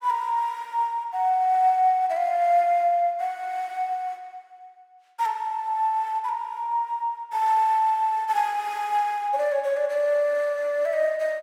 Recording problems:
none

